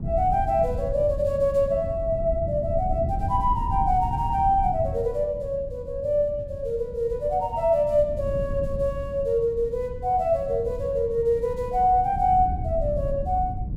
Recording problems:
wind noise; below 120 Hz, SNR 9 dB

